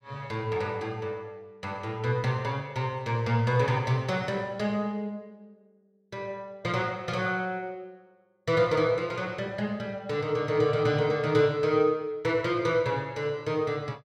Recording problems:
none

